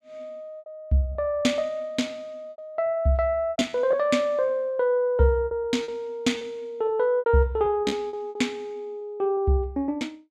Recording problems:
packet loss; 9% of the sound replaced, filled with repeated pitch periods

